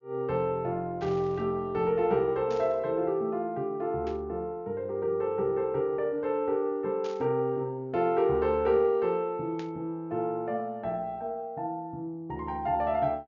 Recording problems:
low-pass filter; nothing above 6.9 kHz
static burst; 5 times, first at 1 s; peak -13 dB vs average level

